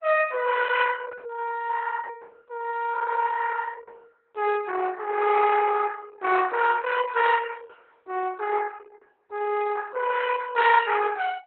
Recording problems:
lossy codec; Opus, log-spectral distance 5 dB

